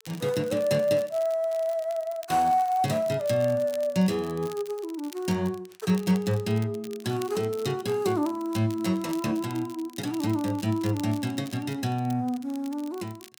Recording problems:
crackling; vinyl, SNR 21 dB

